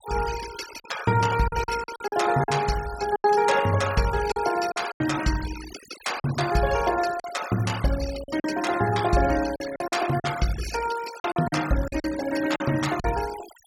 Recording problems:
noise reduction artefacts; signal-to-artefact ratio 13 dB
lost packets; 8% of the sound replaced, filled with silence

